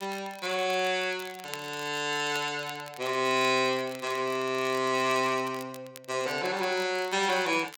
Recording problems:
crackle; vinyl, SNR 19 dB

